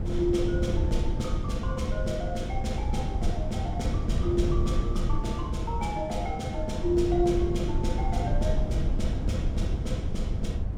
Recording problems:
wind on the microphone; below 120 Hz, SNR -1 dB

